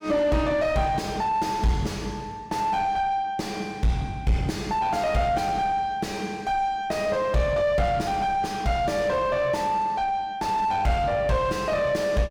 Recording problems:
distortion; soft clipping, signal-to-distortion ratio 6 dB

